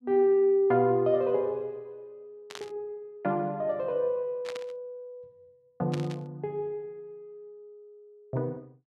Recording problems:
burst of static; at 2.5 s, at 4.5 s and at 6 s; peak -8 dB vs average level

